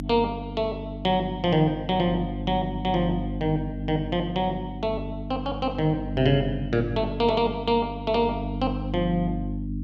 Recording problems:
hum; 50 Hz, harmonics up to 300 Hz, SNR 7 dB

